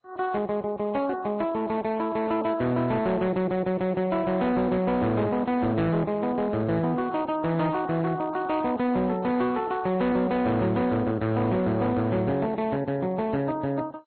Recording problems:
codec artefacts; Vorbis, then MP2, log-spectral distance 2 dB, nothing above 4.2 kHz
distorted audio; hard clipping, uneven, signal-to-distortion ratio 12 dB

